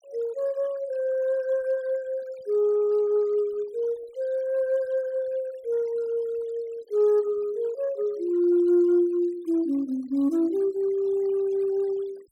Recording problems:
noise reduction artefacts; signal-to-artefact ratio 27 dB

